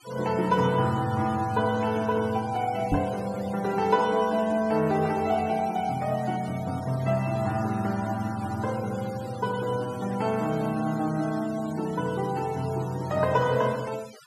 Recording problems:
denoising artefacts; signal-to-artefact ratio 19 dB
microphone thump; at 3 s; peak +5 dB vs average level

